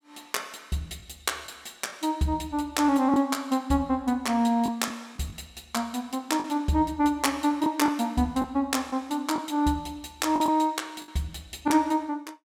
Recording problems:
lost packets; 4% of the sound replaced, filled with the last packet

